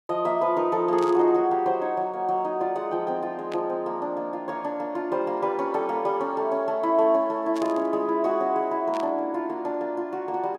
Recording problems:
burst of static; 4 times, first at 1 s; peak -10 dB vs average level

